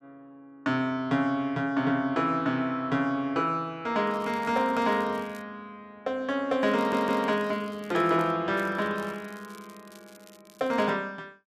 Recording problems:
crackle; from 4 to 5.5 s, from 6.5 to 8.5 s and from 8.5 to 11 s; loose cable, SNR 26 dB
audio stuttering; at 7 s

